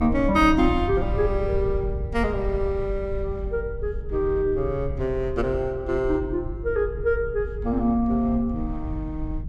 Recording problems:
rumble; below 78 Hz, SNR 8 dB

